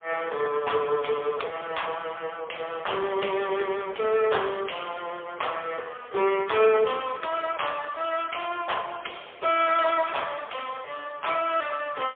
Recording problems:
telephone audio; 340 Hz to 3.4 kHz, AMR-NB, then MP3

